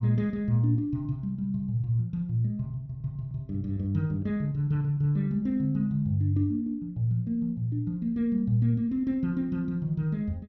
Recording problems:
treble cut off; nothing above 6.5 kHz

